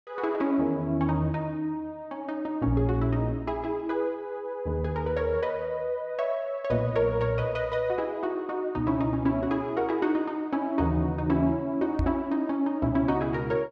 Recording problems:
knock on the microphone; at 12 s; peak +3 dB vs average level

